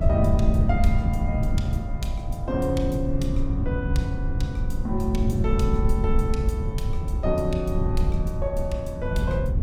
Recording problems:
low-frequency rumble; below 110 Hz, SNR -2 dB

